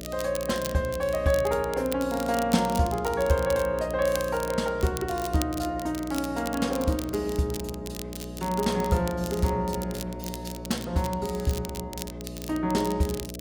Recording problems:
hum; 60 Hz, harmonics up to 660 Hz, SNR 11 dB
crackle; vinyl, SNR 13 dB

